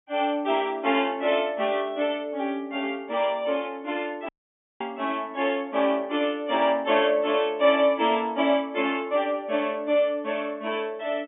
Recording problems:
treble missing; nothing above 3.5 kHz
dropout; at 4.5 s for 0.5 s

